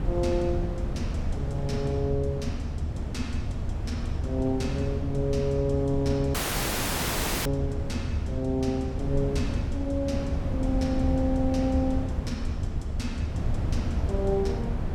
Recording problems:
low-frequency rumble; below 100 Hz, SNR 14 dB
wind noise; below 150 Hz, SNR 4 dB
audio cutting out; at 6.5 s for 1 s

